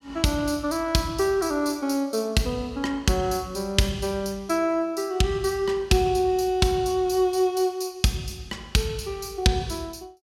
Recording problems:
none

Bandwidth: 16.5 kHz